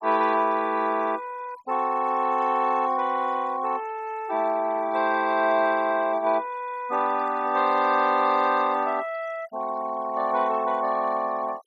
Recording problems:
noise reduction artefacts; signal-to-artefact ratio 22 dB

